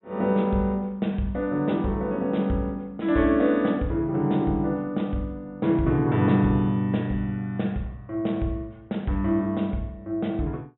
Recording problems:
treble missing; nothing above 3.8 kHz

